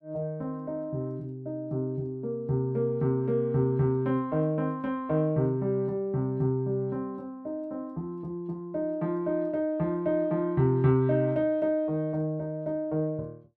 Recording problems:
none

